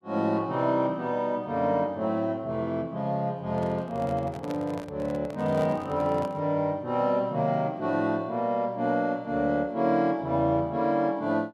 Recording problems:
handling noise; from 3.5 to 6.5 s; peak -7 dB vs average level

